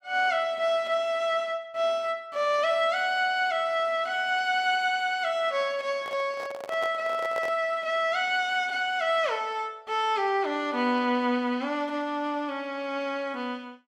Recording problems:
microphone handling noise; from 6 to 7.5 s; peak -5 dB vs average level

